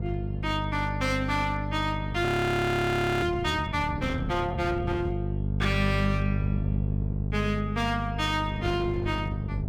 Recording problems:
distortion; hard clipping, uneven, signal-to-distortion ratio 9 dB
hum; 50 Hz, harmonics up to 500 Hz, SNR 2 dB
wind on the microphone; below 250 Hz, SNR 12 dB
audio freezing; at 2.5 s for 1 s

